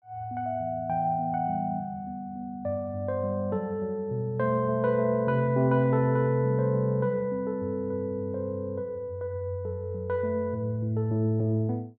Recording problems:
none

